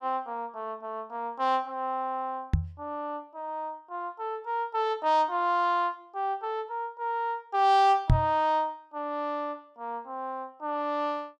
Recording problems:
microphone bump; at 2.5 s and at 8 s; peak +9 dB vs average level

